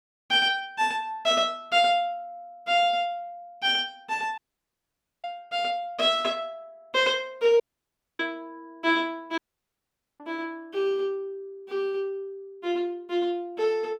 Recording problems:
dropout; at 4.5 s for 1 s, at 7.5 s for 0.5 s and at 9.5 s for 1 s

